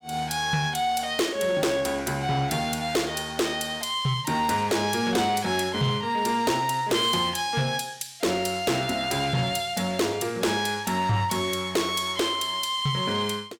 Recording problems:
distortion; soft clipping, signal-to-distortion ratio 12 dB

